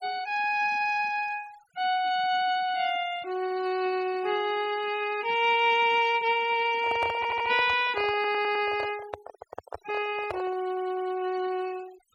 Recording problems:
noise reduction artefacts; signal-to-artefact ratio 18 dB
handling noise; from 6.5 to 11 s; peak -2 dB vs average level
stutter; at 7 s, at 8 s and at 11 s

